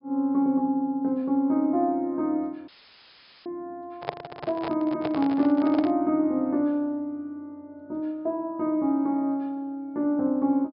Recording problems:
treble missing; nothing above 5.5 kHz
dropout; at 2.5 s for 1 s; filled with static
handling noise; from 4 to 6 s; peak 0 dB vs average level

